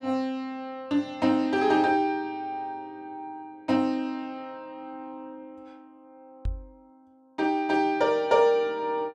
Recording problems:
microphone bump; at 6.5 s; peak -3 dB vs average level

